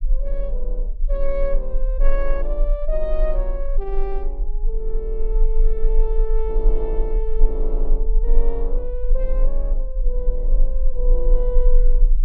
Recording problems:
rumble; below 32 Hz, strongest tone 24 Hz, SNR -6 dB

